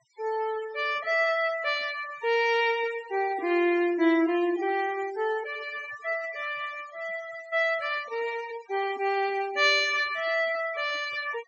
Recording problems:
treble missing; nothing above 8 kHz
noise reduction artefacts; signal-to-artefact ratio 17 dB

